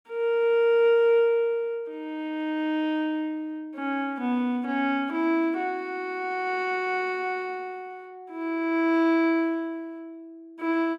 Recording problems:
none

